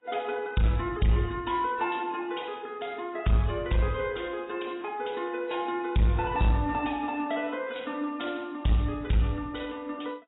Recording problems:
lossy codec; AAC, log-spectral distance 5 dB, nothing above 3.8 kHz
distortion; soft clipping, signal-to-distortion ratio 11 dB

